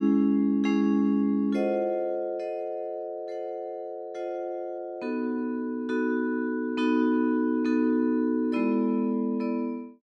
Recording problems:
none

